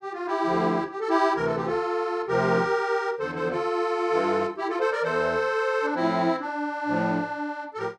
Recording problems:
none

